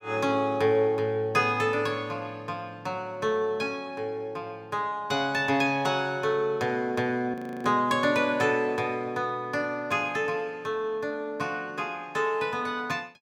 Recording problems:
audio freezing; at 7.5 s

